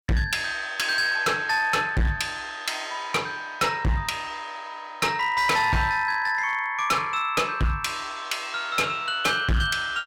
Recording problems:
distortion; hard clipping, uneven, signal-to-distortion ratio 6 dB

